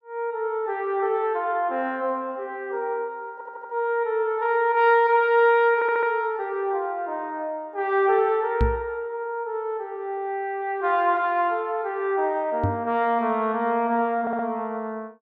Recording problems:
stutter; at 3.5 s, at 6 s and at 14 s
knock on the microphone; at 8.5 s and at 13 s; peak +4 dB vs average level

